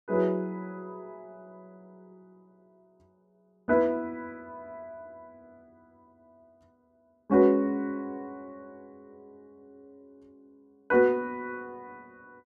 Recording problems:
none

